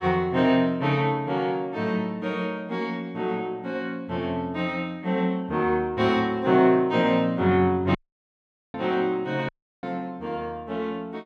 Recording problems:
audio cutting out; at 8 s for 1 s and at 9.5 s

